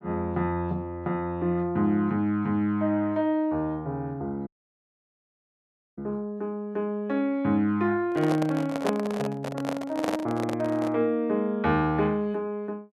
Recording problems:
dropout; at 4.5 s for 1.5 s
microphone handling noise; from 8 to 11 s; peak +2 dB vs average level

